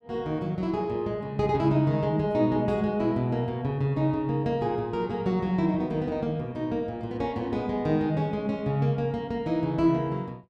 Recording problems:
none

